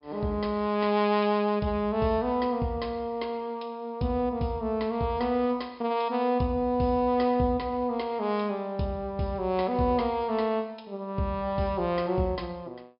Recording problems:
treble missing; nothing above 5.5 kHz

